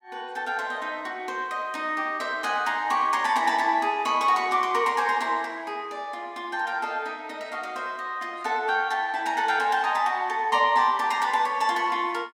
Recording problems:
none

